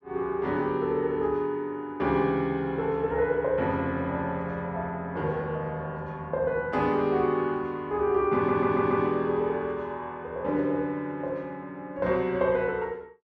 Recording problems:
audio stuttering; at 8.5 s

